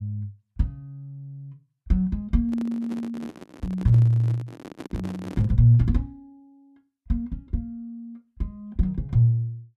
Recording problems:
handling noise; from 2.5 to 5.5 s; peak -9 dB vs average level

